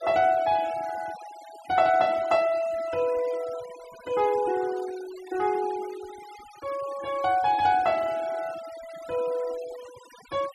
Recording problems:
denoising artefacts; signal-to-artefact ratio 19 dB

